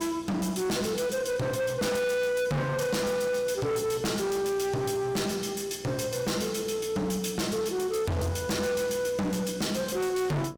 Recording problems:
distortion; hard clipping, signal-to-distortion ratio 6 dB
hum; 60 Hz, harmonics up to 1.3 kHz, SNR 22 dB

